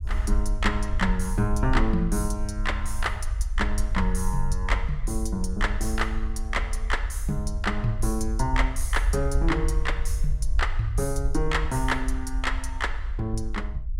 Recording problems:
rumble; below 54 Hz, SNR 1 dB

